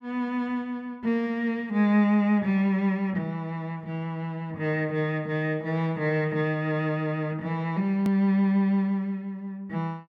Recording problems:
hard cut with a click; at 8 s

